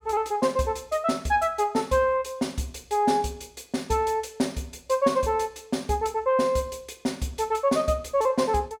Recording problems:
none

